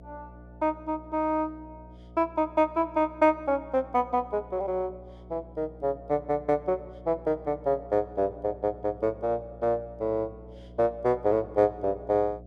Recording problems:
hum; 60 Hz, harmonics up to 720 Hz, SNR 20 dB

